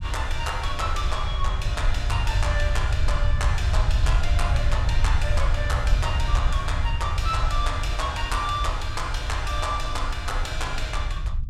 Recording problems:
low-frequency rumble; below 76 Hz, SNR -2 dB

